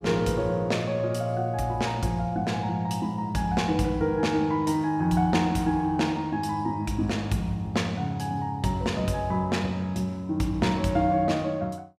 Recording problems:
none

